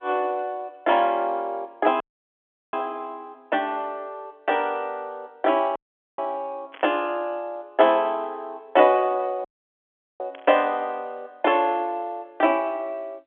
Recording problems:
phone line; 240 Hz to 3.4 kHz, G.711
dropout; at 2 s for 0.5 s, at 6 s and at 9.5 s for 1 s
burst of static; at 6.5 s and at 10 s; peak -14 dB vs average level

